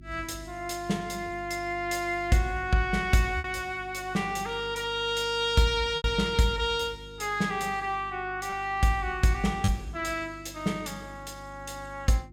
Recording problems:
mains hum; 50 Hz, harmonics up to 350 Hz, SNR 19 dB
lost packets; 1.6% of the sound replaced, filled with repeated pitch periods

